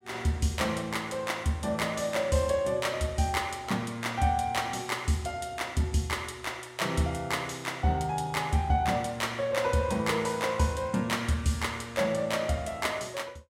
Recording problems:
none

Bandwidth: 16 kHz